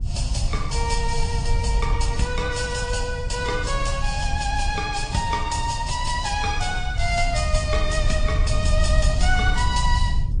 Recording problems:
codec artefacts; AAC, then MP3, log-spectral distance 3 dB, nothing above 9.2 kHz
wind noise; below 74 Hz, SNR 1 dB

